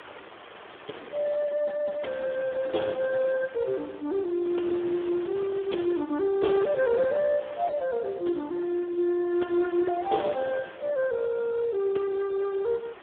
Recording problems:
phone line; 240 Hz to 2.1 kHz, Speex
wind noise; below 2.3 kHz, SNR 19 dB

